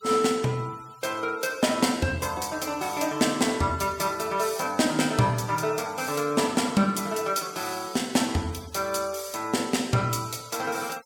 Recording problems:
noise reduction artefacts; signal-to-artefact ratio 21 dB

